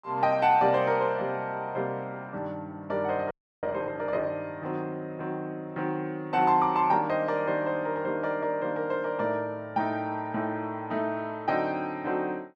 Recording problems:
audio freezing; at 3.5 s

